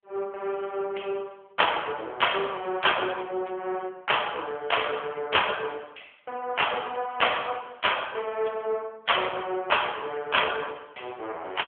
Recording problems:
phone line; 320 Hz to 3.4 kHz, AMR-NB

